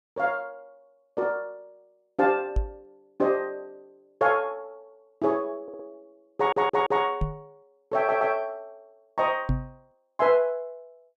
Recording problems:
knock on the microphone; at 2.5 s, at 7 s and at 9.5 s; peak +4 dB vs average level
stutter; at 5.5 s, at 6.5 s and at 8 s

